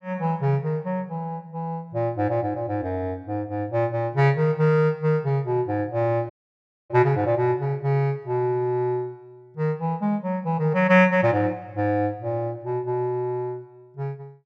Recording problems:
dropout; at 6.5 s for 0.5 s

